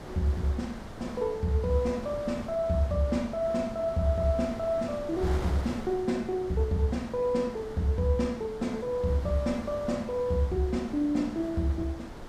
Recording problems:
wind on the microphone; below 870 Hz, SNR 13 dB

